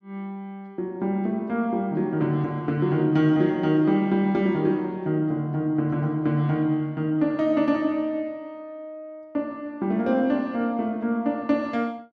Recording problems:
none

